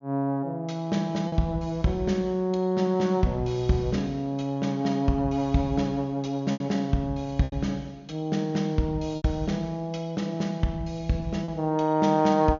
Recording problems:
low-pass filter; nothing above 6.9 kHz
packet loss; 3% of the sound replaced, filled with repeated pitch periods

